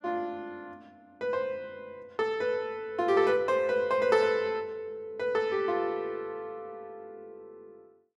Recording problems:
none

